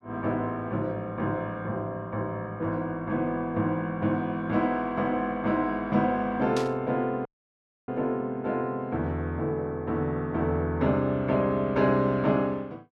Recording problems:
burst of static; at 6.5 s; peak -4 dB vs average level
dropout; at 7.5 s for 0.5 s

